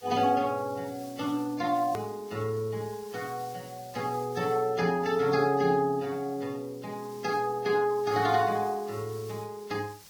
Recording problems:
lossy codec; Vorbis, log-spectral distance 2 dB, nothing above 20.1 kHz
hiss; slope +1 dB per octave, SNR 22 dB
click at an edit; at 2 s

